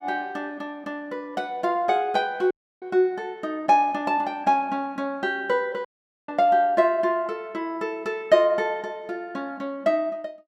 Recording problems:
audio cutting out; at 2.5 s and at 6 s

